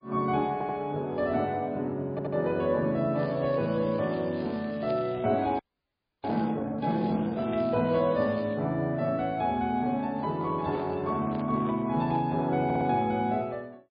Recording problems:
codec artefacts; MP3, log-spectral distance 2 dB, nothing above 4.5 kHz
audio stuttering; at 0.5 s, at 2 s and at 13 s
crackling; from 3 to 6.5 s and from 7 to 8.5 s; loose cable, SNR 23 dB
audio freezing; at 5.5 s for 0.5 s
microphone handling noise; from 10 to 12 s; peak -10 dB vs average level

